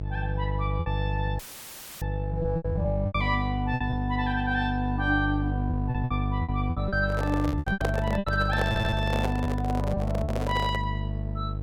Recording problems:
hum; 50 Hz, harmonics up to 650 Hz, SNR 0 dB
packet loss; 9% of the sound replaced, filled with repeated pitch periods
audio cutting out; at 1.5 s for 0.5 s; filled with static
microphone handling noise; from 7 to 11 s; peak +5 dB vs average level
stutter; at 8.5 s

